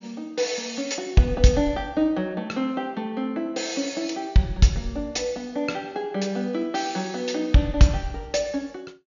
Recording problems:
low-pass filter; nothing above 7 kHz

